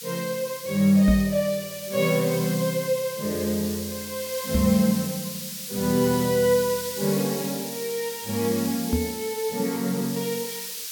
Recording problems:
background hiss; slope +6 dB per octave, SNR 8 dB
microphone bump; at 1 s, at 4.5 s and at 9 s; peak +4 dB vs average level

